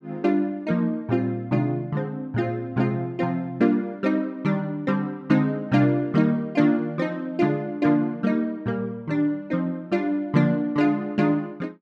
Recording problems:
none

